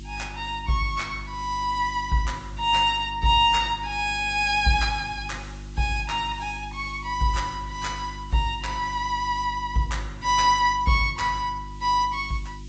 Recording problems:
low-pass filter; nothing above 7.6 kHz
lossy compression; AAC, log-spectral distance 2 dB
electrical hum; 50 Hz, harmonics up to 350 Hz, SNR 15 dB
background hiss; SNR 28 dB

